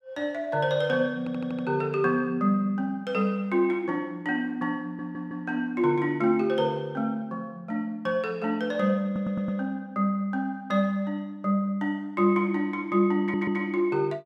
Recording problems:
stutter; 4 times, first at 1 s

